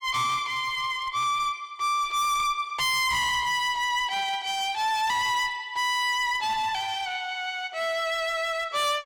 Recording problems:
distortion; hard clipping, uneven, signal-to-distortion ratio 6 dB

